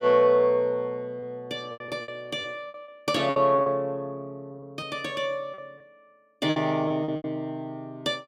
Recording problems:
lost packets; 10% of the sound replaced, filled with repeated pitch periods

